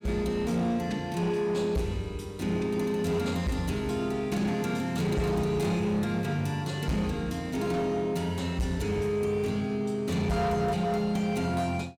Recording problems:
distortion; hard clipping, signal-to-distortion ratio 12 dB

